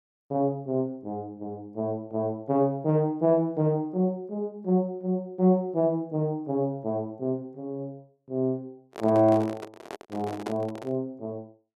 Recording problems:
handling noise; from 9 to 11 s; peak -2 dB vs average level

